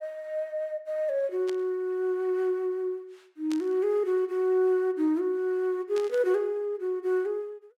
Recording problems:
burst of static; at 1.5 s, at 3.5 s and at 6 s; peak -9 dB vs average level

